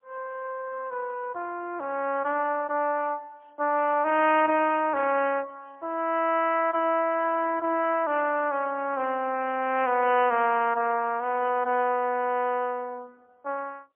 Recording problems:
telephone audio; 280 Hz to 3.1 kHz, AMR-NB, then MP3

